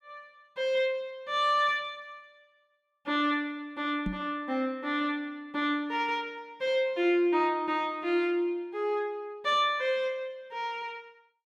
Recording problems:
knock on the microphone; at 4 s; peak 0 dB vs average level

